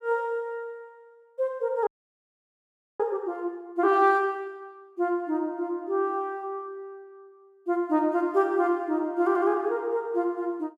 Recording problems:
frozen audio; at 2 s for 1 s

